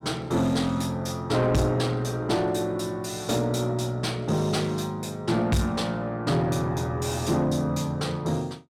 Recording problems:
distortion; soft clipping, signal-to-distortion ratio 10 dB

